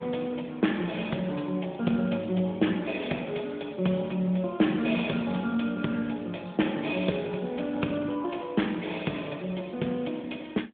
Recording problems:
phone line; 170 Hz to 3.6 kHz, AMR-NB

